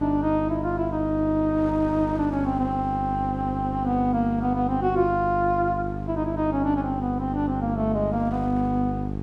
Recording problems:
hum; 50 Hz, harmonics up to 850 Hz, SNR 6 dB
wind noise; below 1.1 kHz, SNR 23 dB

